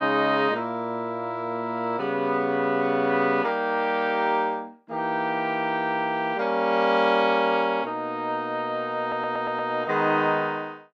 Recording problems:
audio stuttering; at 9 s

